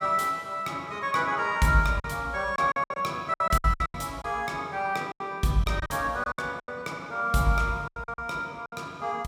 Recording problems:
lost packets; 11% of the sound replaced, filled with silence

